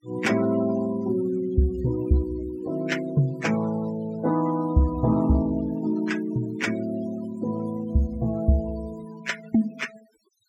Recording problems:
denoising artefacts; signal-to-artefact ratio 17 dB

